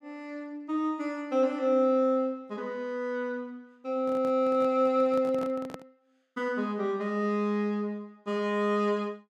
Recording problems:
microphone handling noise; from 4 to 6 s; peak -7 dB vs average level

